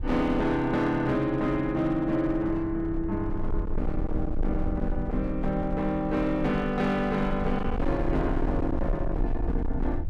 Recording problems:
distortion; hard clipping, signal-to-distortion ratio 10 dB
low-frequency rumble; below 64 Hz, SNR 7 dB

